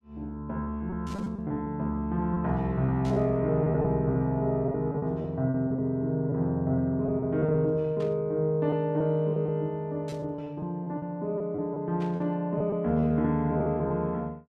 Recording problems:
packet loss; 9% of the sound replaced, filled with repeated pitch periods
burst of static; 5 times, first at 1 s; peak -14 dB vs average level

